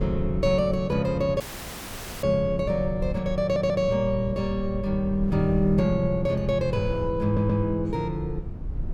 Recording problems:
rumble; below 84 Hz, SNR 12 dB
wind noise; below 200 Hz, SNR 17 dB
audio cutting out; at 1.5 s for 1 s
stutter; at 3.5 s and at 7 s

